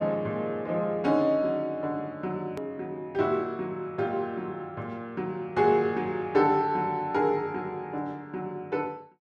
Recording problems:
click at an edit; at 2.5 s

